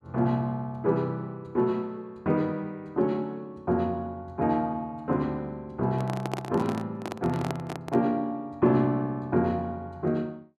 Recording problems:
handling noise; from 6 to 8 s; peak 0 dB vs average level

